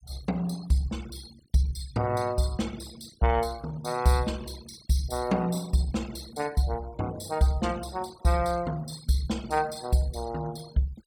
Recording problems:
denoising artefacts; signal-to-artefact ratio 21 dB

